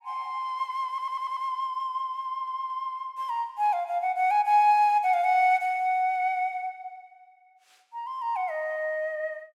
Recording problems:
audio stuttering; at 1 s and at 2.5 s

